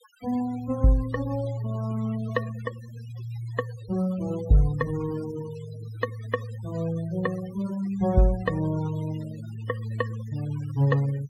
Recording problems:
noise reduction artefacts; signal-to-artefact ratio 19 dB

